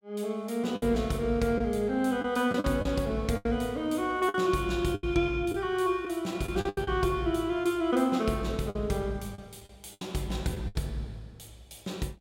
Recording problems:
packet loss; 7% of the sound replaced, filled with the last packet

